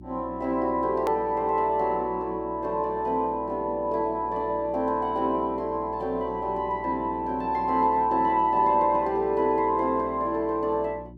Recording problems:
electrical hum; 60 Hz, harmonics up to 360 Hz, SNR 20 dB
hard cut with a click; at 1 s

